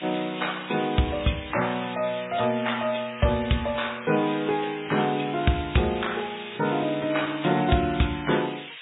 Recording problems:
low-pass filter; nothing above 3.8 kHz
lossy codec; MP3, log-spectral distance 18 dB
background hiss; SNR 13 dB

